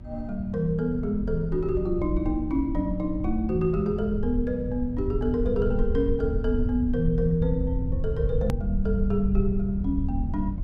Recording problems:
mains hum; 60 Hz, harmonics up to 1.2 kHz, SNR 21 dB
low-frequency rumble; below 88 Hz, SNR 4 dB
click at an edit; at 8.5 s

